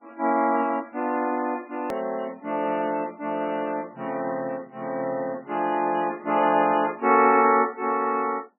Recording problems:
lossy compression; MP3, log-spectral distance 4 dB
hard cut with a click; at 2 s

